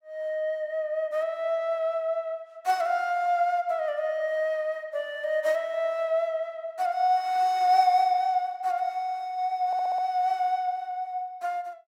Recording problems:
audio stuttering; at 9.5 s

